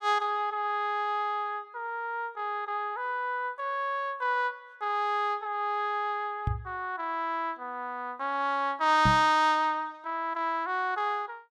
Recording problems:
microphone bump; at 6.5 s and at 9 s; peak +5 dB vs average level

